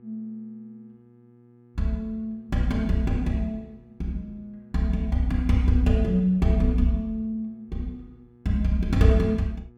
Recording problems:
mains hum; 60 Hz, harmonics up to 1.3 kHz, SNR 28 dB

